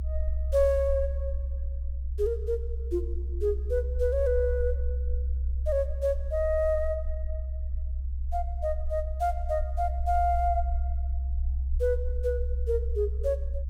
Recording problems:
rumble; below 66 Hz, strongest tone 64 Hz, SNR 2 dB

